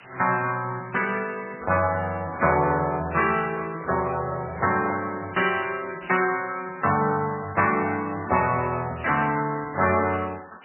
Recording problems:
lossy compression; MP3, log-spectral distance 19 dB, nothing above 2.6 kHz
hiss; SNR 22 dB
handling noise; from 3.5 to 5 s; peak -4 dB vs average level

